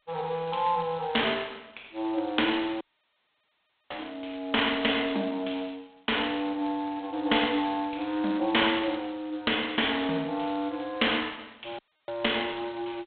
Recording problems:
telephone audio; 240 Hz to 3.6 kHz, G.726
dropout; at 3 s for 1 s and at 12 s

